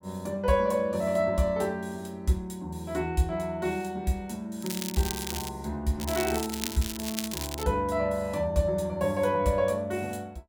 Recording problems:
crackling; at 4.5 s and from 6 to 7.5 s; loose cable, SNR 6 dB

